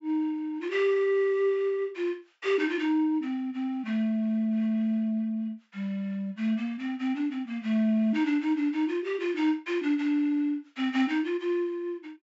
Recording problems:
treble missing; nothing above 8 kHz

